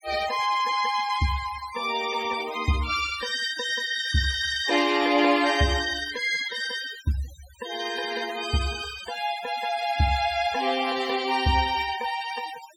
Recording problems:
denoising artefacts; signal-to-artefact ratio 15 dB

